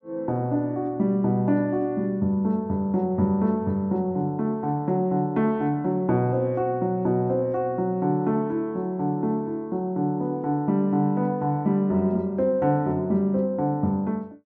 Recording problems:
none

